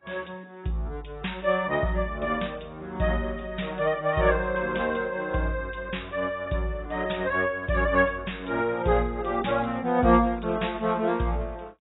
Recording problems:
codec artefacts; AAC, log-spectral distance 4 dB, nothing above 3.8 kHz

